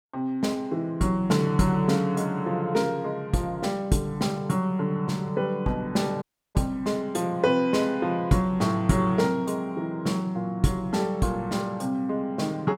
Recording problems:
audio cutting out; at 6 s

